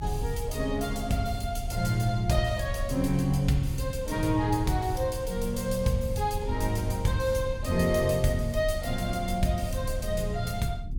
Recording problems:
low-frequency rumble; below 78 Hz, SNR 9 dB

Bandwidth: 17 kHz